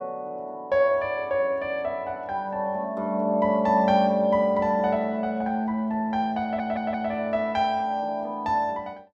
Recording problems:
audio stuttering; at 6.5 s

